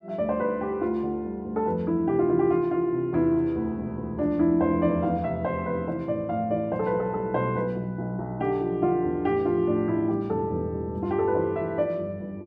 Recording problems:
none

